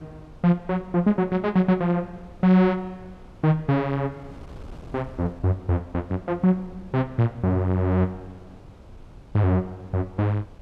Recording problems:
wind noise; below 280 Hz, SNR 23 dB

